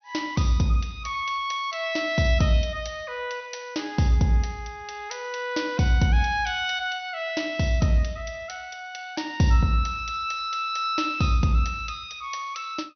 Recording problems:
treble missing; nothing above 6.1 kHz

